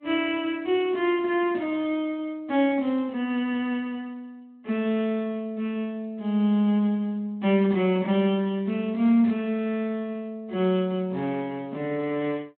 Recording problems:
phone line; 150 Hz to 3.5 kHz, Speex

